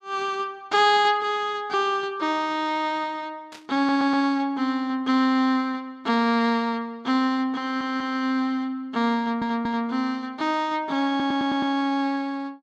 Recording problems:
burst of static; at 3.5 s; peak -14 dB vs average level
stutter; 4 times, first at 4 s

